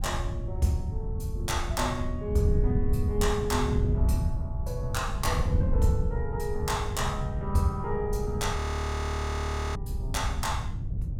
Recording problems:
wind noise; below 110 Hz, SNR 0 dB
frozen audio; at 8.5 s for 1 s

